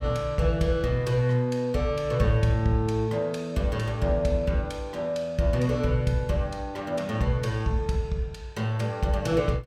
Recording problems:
none

